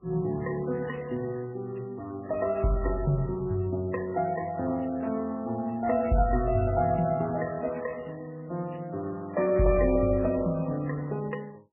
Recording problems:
lossy codec; MP3, then MP3, log-spectral distance 6 dB, nothing above 2.4 kHz

